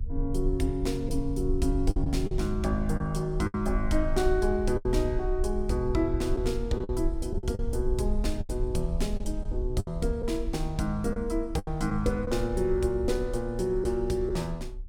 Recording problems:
low-frequency rumble; below 56 Hz, SNR 5 dB
lost packets; 6% of the sound replaced, filled with the last packet

